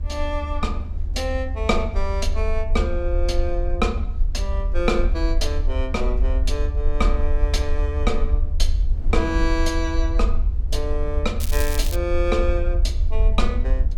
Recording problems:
rumble; below 60 Hz, SNR -2 dB
wind on the microphone; below 200 Hz, SNR 15 dB
crackle; at 11 s; loose cable, SNR 6 dB

